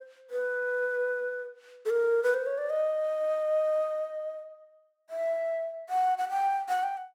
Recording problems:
none

